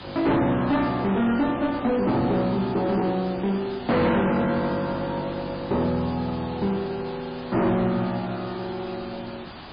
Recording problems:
lossy codec; MP3, log-spectral distance 9 dB
distortion; soft clipping, signal-to-distortion ratio 7 dB
hiss; SNR 15 dB

